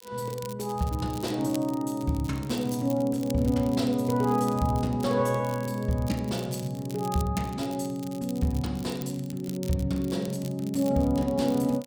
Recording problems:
crackling; vinyl, SNR 18 dB

